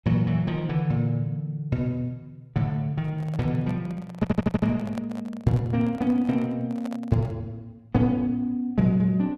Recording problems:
handling noise; from 3 to 7.5 s; peak -8 dB vs average level
audio stuttering; at 4 s

